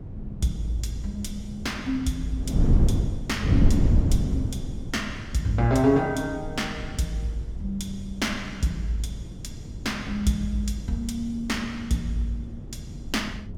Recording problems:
wind noise; below 150 Hz, SNR 2 dB

